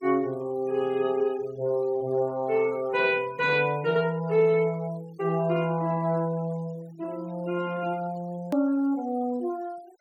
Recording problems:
noise reduction artefacts; signal-to-artefact ratio 25 dB
edit click; at 8.5 s

